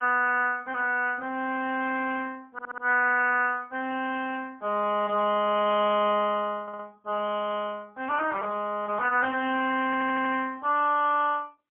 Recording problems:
phone line; 220 Hz to 3.2 kHz, AMR-NB, then MP3
stutter; at 2.5 s, at 6.5 s and at 10 s

